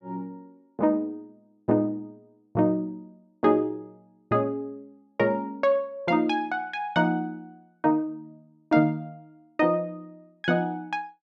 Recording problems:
none

